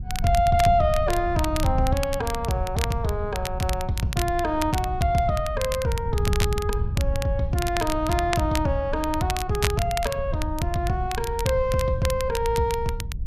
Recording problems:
wind on the microphone; below 92 Hz, SNR 7 dB
crackling; vinyl, SNR 10 dB

